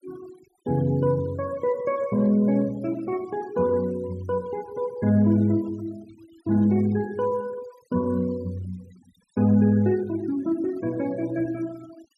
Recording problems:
noise reduction artefacts; signal-to-artefact ratio 24 dB

